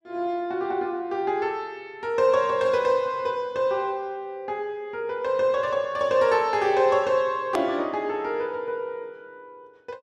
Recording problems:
hard cut with a click; at 7.5 s

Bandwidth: 12 kHz